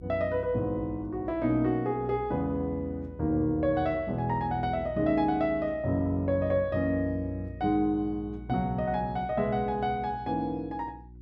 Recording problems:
hum; 60 Hz, harmonics up to 360 Hz, SNR 17 dB

